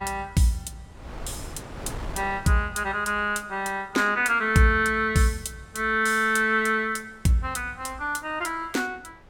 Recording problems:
wind on the microphone; below 660 Hz, SNR 20 dB

